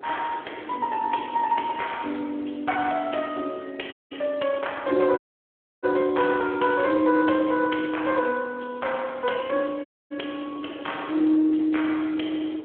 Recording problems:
phone line; 260 Hz to 3.3 kHz, Speex
wind noise; below 510 Hz, SNR 20 dB
audio cutting out; at 4 s, at 5 s for 0.5 s and at 10 s

